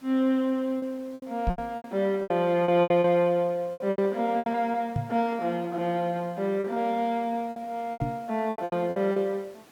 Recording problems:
hiss; slope -5 dB per octave, SNR 27 dB
lost packets; 13% of the sound replaced, filled with repeated pitch periods
microphone thump; at 1.5 s, at 5 s and at 8 s; peak +2 dB vs average level

